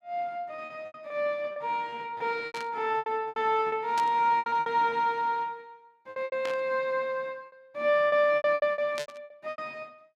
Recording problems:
lost packets; 15% of the sound replaced, filled with repeated pitch periods
static burst; 4 times, first at 2.5 s; peak -5 dB vs average level

